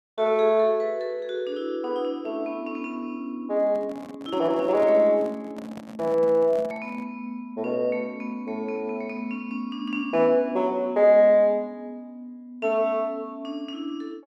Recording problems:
handling noise; from 3.5 to 7 s; peak -11 dB vs average level

